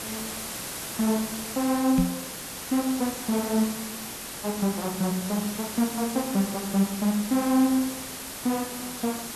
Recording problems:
hiss; slope -2 dB per octave, SNR 7 dB
microphone bump; at 2 s; peak +6 dB vs average level

